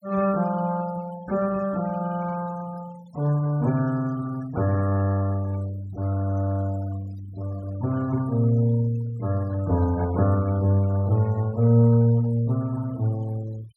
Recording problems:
denoising artefacts; signal-to-artefact ratio 21 dB

